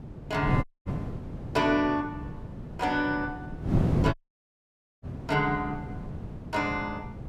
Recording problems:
wind noise; below 260 Hz, SNR 5 dB
audio cutting out; at 0.5 s and at 4 s for 1 s

